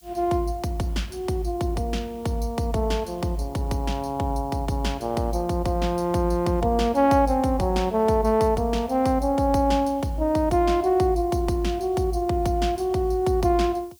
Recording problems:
hiss; SNR 29 dB

